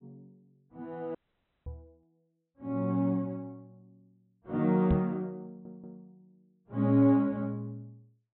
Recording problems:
low-pass filter; nothing above 4 kHz
audio cutting out; at 1 s for 0.5 s
microphone bump; at 1.5 s and at 5 s; peak +5 dB vs average level
stutter; at 5.5 s

